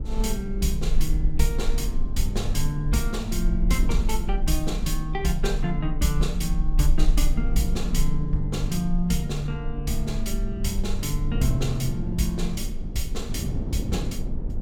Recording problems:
rumble; below 40 Hz, strongest tone 18 Hz, SNR 3 dB
wind on the microphone; below 230 Hz, SNR 7 dB

